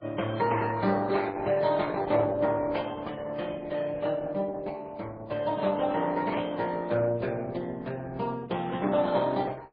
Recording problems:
lossy codec; Opus, then MP3, log-spectral distance 4 dB, nothing above 4.4 kHz

